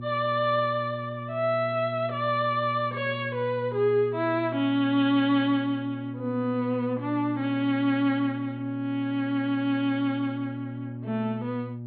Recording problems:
treble cut off; nothing above 4.4 kHz
hum; 60 Hz, harmonics up to 600 Hz, SNR 11 dB

